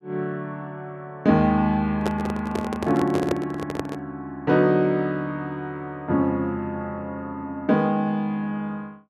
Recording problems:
handling noise; from 2 to 4 s; peak +2 dB vs average level

